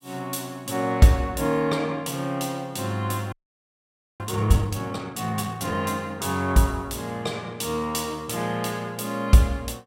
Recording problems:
audio freezing; at 3.5 s for 1 s

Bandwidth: 16 kHz